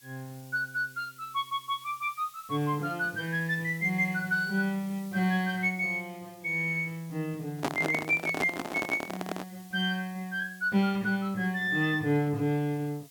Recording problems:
background hiss; SNR 23 dB
microphone handling noise; from 7.5 to 9.5 s; peak +4 dB vs average level

